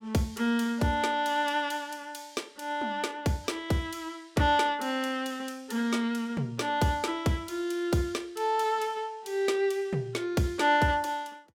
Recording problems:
none

